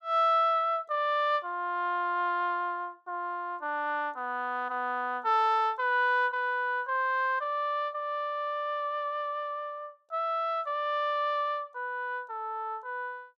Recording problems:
none

